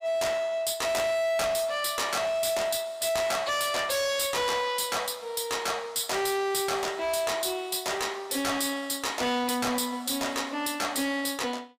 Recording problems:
distortion; hard clipping, signal-to-distortion ratio 8 dB

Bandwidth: 15.5 kHz